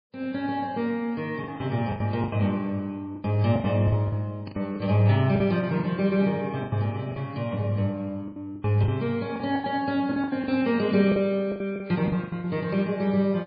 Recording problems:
lossy compression; MP3, log-spectral distance 2 dB, nothing above 4.8 kHz
packet loss; 12% of the sound replaced, filled with the last packet

